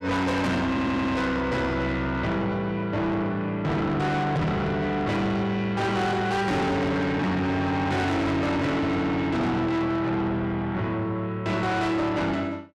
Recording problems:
distorted audio; soft clipping, signal-to-distortion ratio 6 dB
audio stuttering; at 0.5 s

